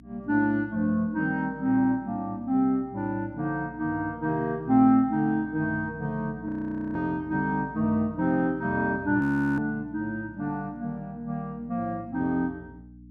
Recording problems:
hum; 60 Hz, harmonics up to 300 Hz, SNR 22 dB
audio freezing; at 6.5 s and at 9 s

